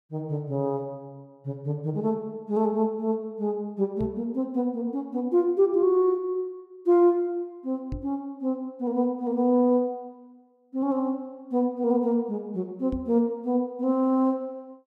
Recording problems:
microphone bump; at 4 s, at 8 s and at 13 s; peak -4 dB vs average level

